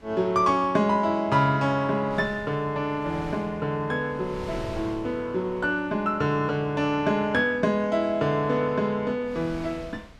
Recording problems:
wind noise; below 770 Hz, SNR 20 dB

